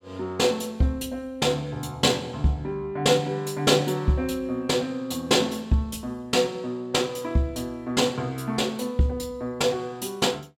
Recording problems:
none

